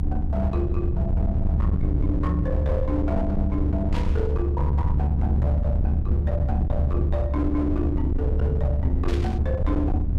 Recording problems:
distorted audio; hard clipping, uneven, signal-to-distortion ratio 7 dB
low-frequency rumble; below 100 Hz, strongest tone 72 Hz, SNR -4 dB
static burst; at 4 s and at 9 s; peak -5 dB vs average level

